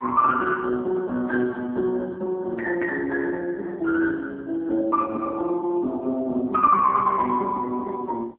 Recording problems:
telephone audio; 220 Hz to 2.2 kHz, AMR-NB

